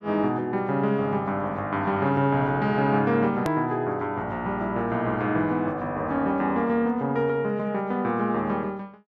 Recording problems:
edit click; at 3.5 s

